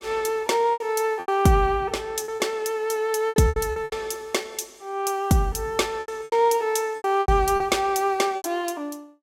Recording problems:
lost packets; 11% of the sound replaced, filled with repeated pitch periods

